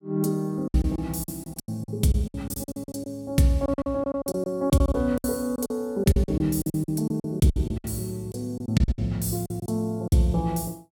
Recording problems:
lost packets; 16% of the sound replaced, filled with silence

